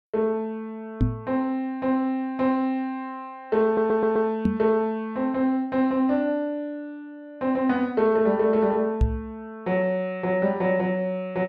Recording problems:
knock on the microphone; at 1 s, at 4.5 s and at 9 s; peak +6 dB vs average level
stutter; at 3.5 s

